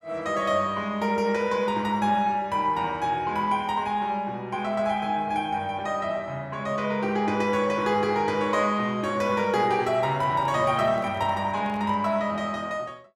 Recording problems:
handling noise; from 10 to 12 s; peak -11 dB vs average level

